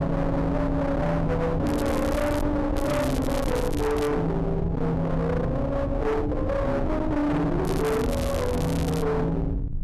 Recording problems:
distorted audio; hard clipping, signal-to-distortion ratio 6 dB
rumble; below 290 Hz, SNR 5 dB
crackling; at 1.5 s, from 3 to 4 s and from 7.5 to 9 s; loose cable, SNR 13 dB

